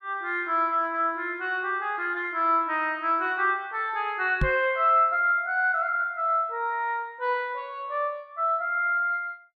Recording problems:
microphone thump; at 4.5 s; peak +2 dB vs average level

